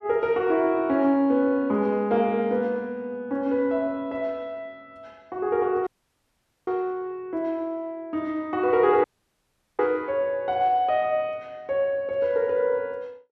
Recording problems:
dropout; at 6 s for 1 s and at 9 s for 1 s

